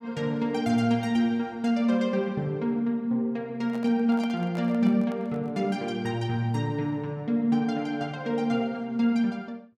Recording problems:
microphone handling noise; from 3.5 to 5.5 s; peak -11 dB vs average level

